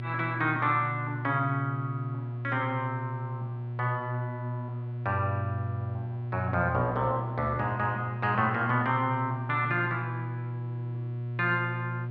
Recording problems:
hum; 60 Hz, harmonics up to 600 Hz, SNR 5 dB

